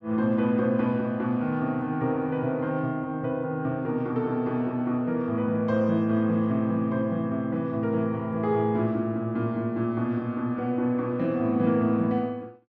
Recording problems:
none

